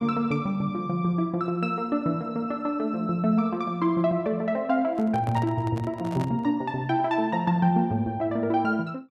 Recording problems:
handling noise; from 5 to 6.5 s; peak -7 dB vs average level

